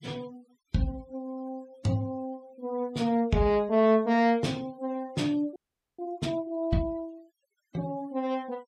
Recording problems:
denoising artefacts; signal-to-artefact ratio 26 dB
frozen audio; at 5.5 s

